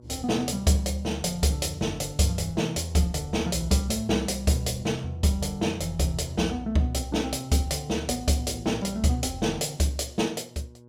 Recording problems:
electrical hum; 60 Hz, harmonics up to 1.1 kHz, SNR 25 dB

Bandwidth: 16 kHz